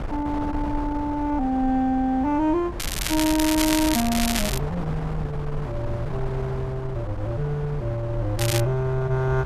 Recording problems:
wind noise; below 280 Hz, SNR 8 dB
crackling; from 3 to 4.5 s and at 8.5 s; loose cable, SNR 2 dB

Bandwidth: 14 kHz